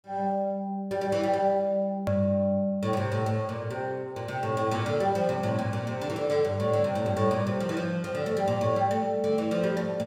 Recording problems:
hard cut with a click; at 2 s

